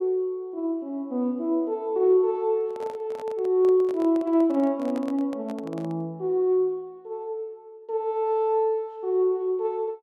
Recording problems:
handling noise; from 2.5 to 6 s; peak -10 dB vs average level

